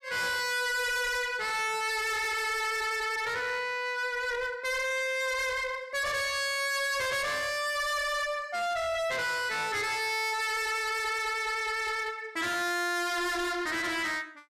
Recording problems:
distortion; hard clipping, uneven, signal-to-distortion ratio 5 dB

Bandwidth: 14.5 kHz